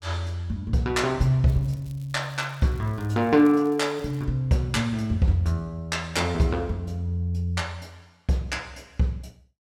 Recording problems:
crackling; from 1.5 to 4 s; loose cable, SNR 29 dB

